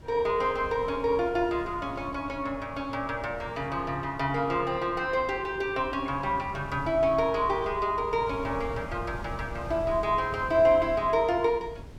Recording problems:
wind noise; below 230 Hz, SNR 15 dB

